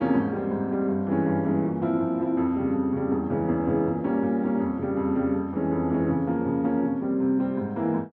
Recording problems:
none

